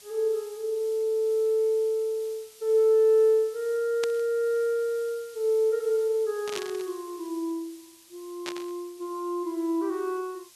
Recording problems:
hiss; slope +3 dB per octave, SNR 23 dB
static burst; at 4 s, at 6.5 s and at 8.5 s; peak -3 dB vs average level

